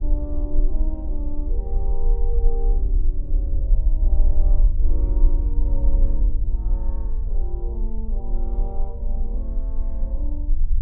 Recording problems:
low-pass filter; nothing above 4 kHz
rumble; below 42 Hz, strongest tone 20 Hz, SNR -14 dB

